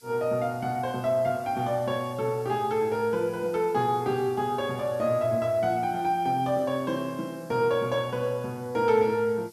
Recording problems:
background hiss; SNR 26 dB

